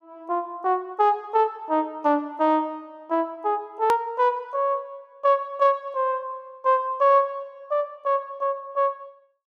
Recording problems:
click at an edit; at 4 s

